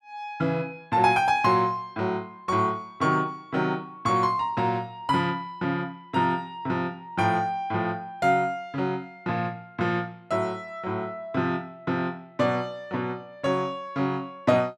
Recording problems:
none

